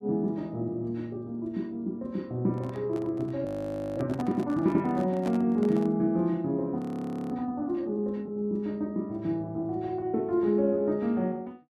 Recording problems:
handling noise; from 2.5 to 6 s; peak -6 dB vs average level
frozen audio; at 3.5 s for 0.5 s and at 7 s for 0.5 s

